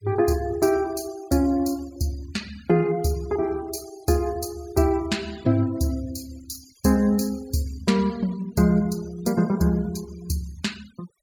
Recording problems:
denoising artefacts; signal-to-artefact ratio 22 dB

